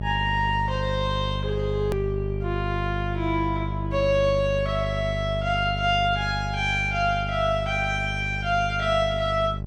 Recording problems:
hum; 50 Hz, harmonics up to 650 Hz, SNR 5 dB
click at an edit; at 2 s

